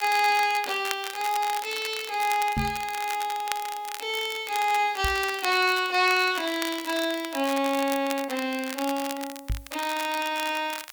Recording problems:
background hiss; slope 0 dB per octave, SNR 28 dB
crackle; vinyl, SNR 11 dB
knock on the microphone; at 2.5 s, at 5 s and at 9.5 s; peak 0 dB vs average level

